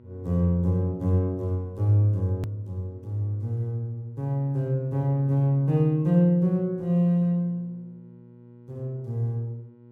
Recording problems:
electrical hum; 60 Hz, harmonics up to 960 Hz, SNR 25 dB
edit click; at 2.5 s

